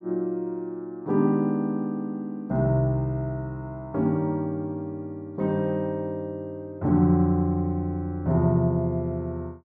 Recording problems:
none

